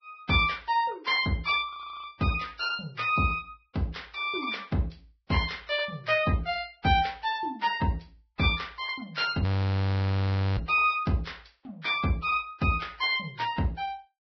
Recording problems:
lossy codec; Vorbis, log-spectral distance 5 dB, nothing above 5.5 kHz
frozen audio; at 1.5 s and at 9.5 s for 1 s

